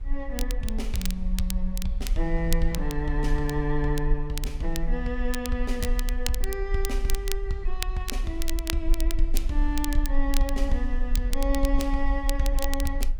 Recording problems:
low-frequency rumble; below 40 Hz, SNR 0 dB
wind noise; below 180 Hz, SNR 19 dB
crackle; vinyl, SNR 7 dB

